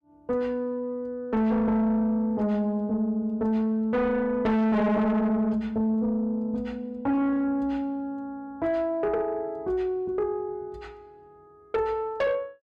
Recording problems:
distorted audio; soft clipping, signal-to-distortion ratio 8 dB

